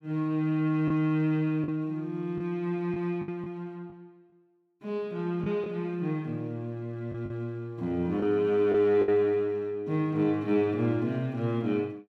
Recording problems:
packet loss; 4% of the sound replaced, filled with the last packet

